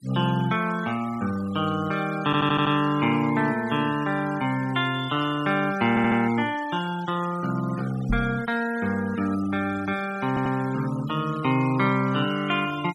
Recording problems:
denoising artefacts; signal-to-artefact ratio 17 dB
stutter; at 2.5 s, at 6 s and at 10 s
microphone bump; at 8 s; peak 0 dB vs average level

